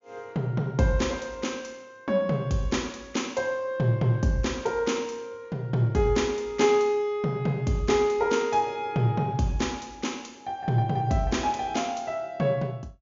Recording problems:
treble cut off; nothing above 7.2 kHz

